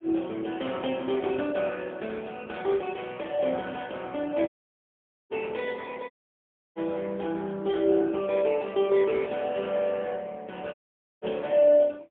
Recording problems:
phone line; 220 Hz to 3.4 kHz, AMR-NB, then MP3
audio cutting out; at 4.5 s for 1 s, at 6 s for 0.5 s and at 11 s

